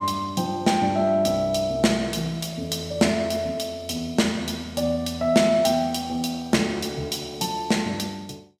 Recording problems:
none

